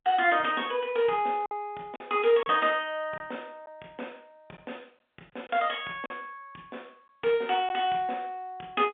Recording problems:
telephone audio; 280 Hz to 3.5 kHz, G.711
lost packets; 3% of the sound replaced, filled with silence

